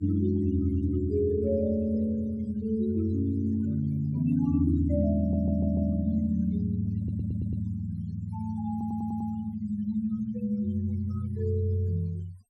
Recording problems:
denoising artefacts; signal-to-artefact ratio 26 dB
audio stuttering; at 5 s, at 7 s and at 8.5 s

